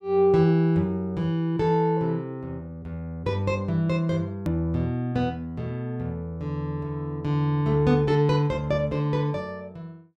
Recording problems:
edit click; at 4.5 s

